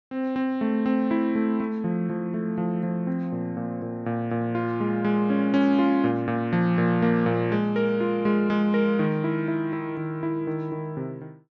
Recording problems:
treble cut off; nothing above 8 kHz

